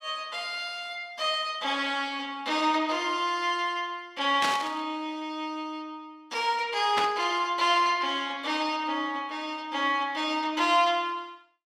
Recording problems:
static burst; at 4.5 s and at 7 s; peak +3 dB vs average level

